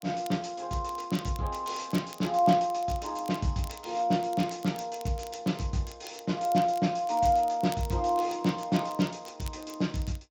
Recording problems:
codec artefacts; Speex, log-spectral distance 4 dB
crackling; vinyl, SNR 21 dB

